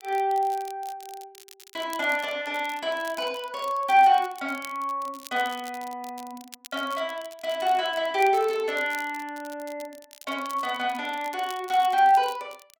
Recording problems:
crackling; vinyl, SNR 20 dB

